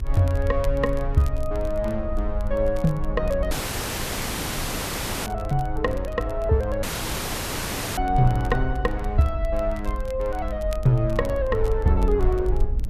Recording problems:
rumble; below 52 Hz, SNR 6 dB
crackling; vinyl, SNR 25 dB
dropout; at 3.5 s for 2 s and at 7 s for 1 s

